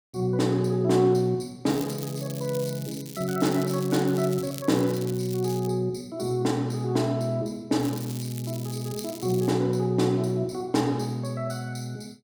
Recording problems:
crackling; from 1.5 to 5.5 s and from 8 to 9.5 s; loose cable, SNR 15 dB

